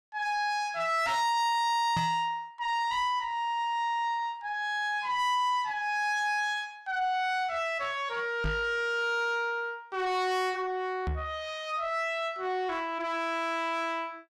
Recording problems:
distorted audio; soft clipping, signal-to-distortion ratio 10 dB
knock on the microphone; at 2 s, at 8.5 s and at 11 s; peak +2 dB vs average level

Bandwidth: 14.5 kHz